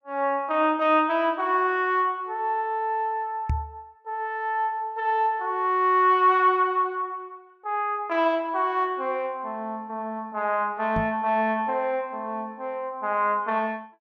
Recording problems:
microphone thump; at 3.5 s and at 11 s; peak +1 dB vs average level

